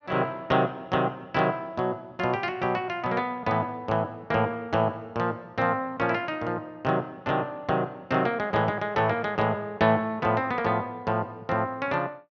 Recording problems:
none

